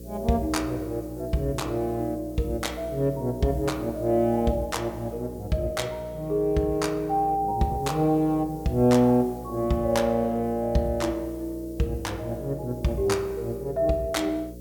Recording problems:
hum; 60 Hz, harmonics up to 540 Hz, SNR 15 dB
hiss; slope +4 dB per octave, SNR 25 dB

